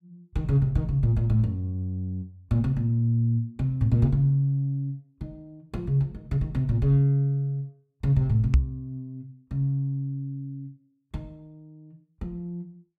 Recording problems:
microphone bump; at 8.5 s; peak +9 dB vs average level

